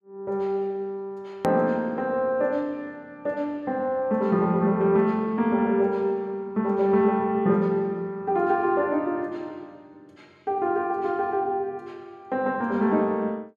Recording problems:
hard cut with a click; at 1.5 s

